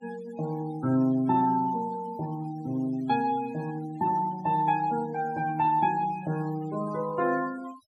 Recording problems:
noise reduction artefacts; signal-to-artefact ratio 19 dB

